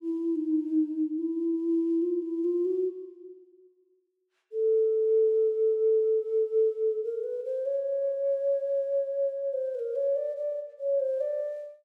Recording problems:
none

